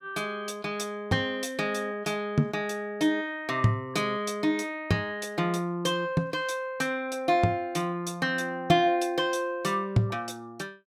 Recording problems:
none

